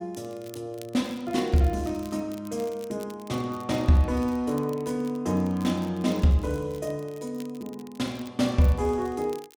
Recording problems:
crackle; vinyl, SNR 24 dB

